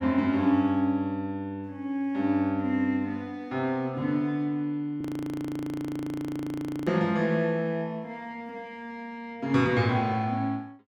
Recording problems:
audio freezing; at 5 s for 2 s

